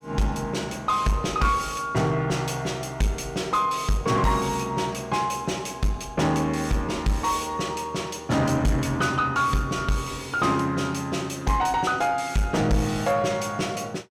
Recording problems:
distortion; soft clipping, signal-to-distortion ratio 10 dB

